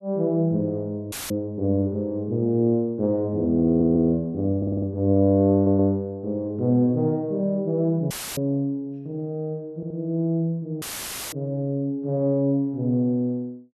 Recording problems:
audio cutting out; at 1 s, at 8 s and at 11 s for 0.5 s; filled with static
audio stuttering; 4 times, first at 3.5 s

